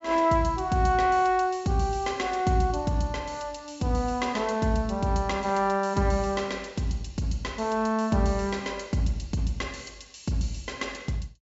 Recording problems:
low-pass filter; nothing above 8 kHz

